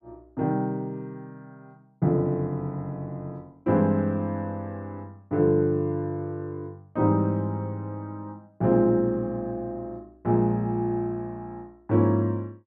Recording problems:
none

